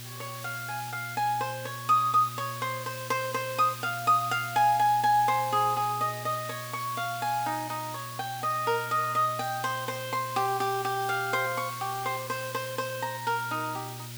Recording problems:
hum; 60 Hz, harmonics up to 840 Hz, SNR 16 dB
background hiss; SNR 12 dB

